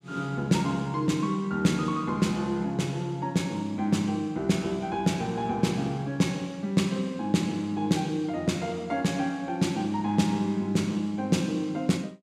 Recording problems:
none

